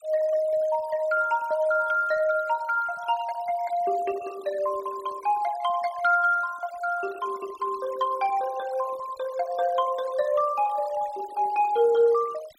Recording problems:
noise reduction artefacts; signal-to-artefact ratio 20 dB

